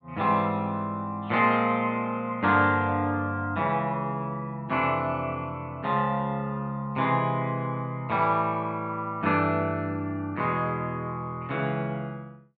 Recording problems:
none

